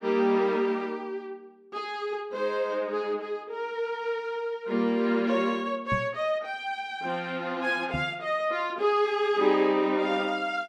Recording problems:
microphone bump; at 6 s and at 8 s; peak 0 dB vs average level

